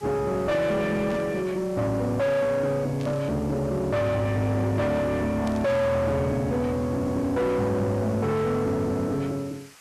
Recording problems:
distorted audio; soft clipping, signal-to-distortion ratio 7 dB
hiss; SNR 23 dB
static burst; at 1 s, at 3 s and at 5.5 s; peak -12 dB vs average level

